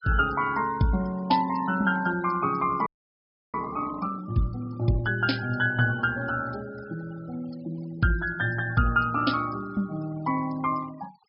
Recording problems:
low-pass filter; nothing above 5.5 kHz
noise reduction artefacts; signal-to-artefact ratio 22 dB
frozen audio; at 3 s for 0.5 s

